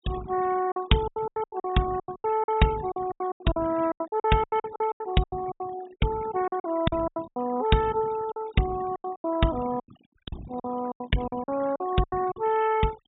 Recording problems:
treble cut off; nothing above 4 kHz
noise reduction artefacts; signal-to-artefact ratio 16 dB
packet loss; 18% of the sound replaced, filled with silence

